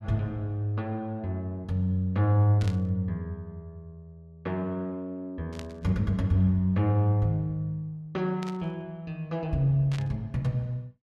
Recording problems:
static burst; 4 times, first at 2.5 s; peak -10 dB vs average level

